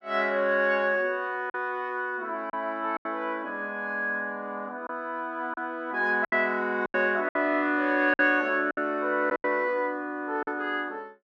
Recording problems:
packet loss; 6% of the sound replaced, filled with silence

